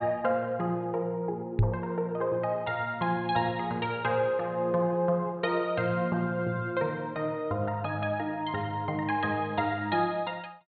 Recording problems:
treble missing; nothing above 4.4 kHz
knock on the microphone; at 1.5 s; peak +8 dB vs average level

